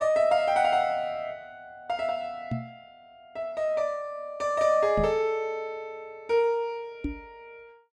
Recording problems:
microphone thump; at 2.5 s, at 5 s and at 7 s; peak -1 dB vs average level

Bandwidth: 12.5 kHz